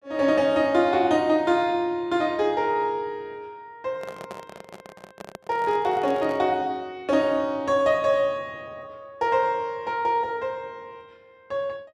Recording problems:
handling noise; from 4 to 6.5 s; peak -10 dB vs average level

